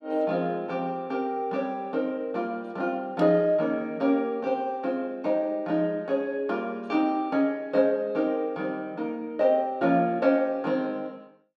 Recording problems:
none

